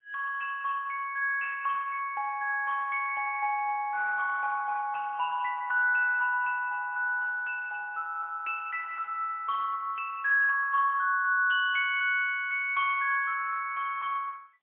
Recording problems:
telephone audio; 130 Hz to 3.1 kHz, AMR-NB, then MP3

